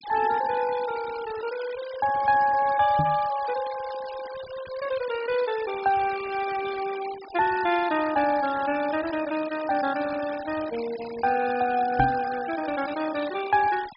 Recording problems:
treble missing; nothing above 5.5 kHz
denoising artefacts; signal-to-artefact ratio 15 dB
microphone bump; at 3 s and at 12 s; peak +2 dB vs average level

